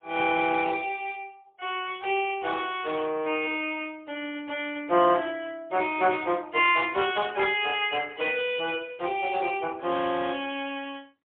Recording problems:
phone line; 300 Hz to 3.4 kHz, AMR-NB, then MP3

